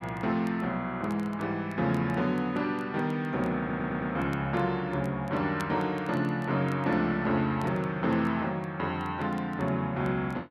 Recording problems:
crackle; vinyl, SNR 29 dB
audio stuttering; at 3.5 s

